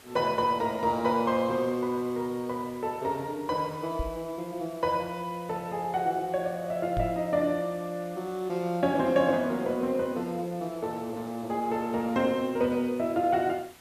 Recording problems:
hiss; slope -2 dB per octave, SNR 23 dB
microphone bump; at 4 s and at 7 s; peak -1 dB vs average level

